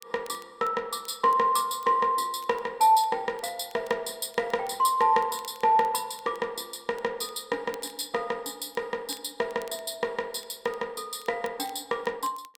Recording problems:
crackle; vinyl, SNR 26 dB

